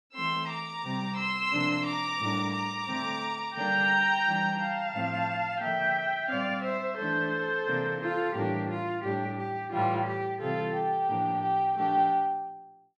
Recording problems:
none

